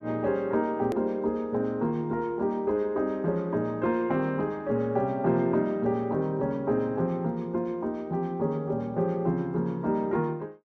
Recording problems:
hard cut with a click; at 1 s

